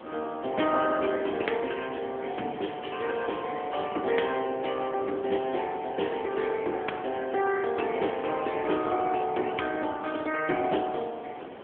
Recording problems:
telephone audio; 240 Hz to 3.2 kHz, AMR-NB
background hiss; SNR 24 dB
wind noise; below 730 Hz, SNR 14 dB

